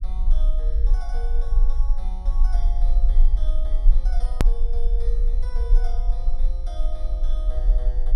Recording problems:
rumble; below 38 Hz, strongest tone 22 Hz, SNR -18 dB
click at an edit; at 4.5 s

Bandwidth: 13 kHz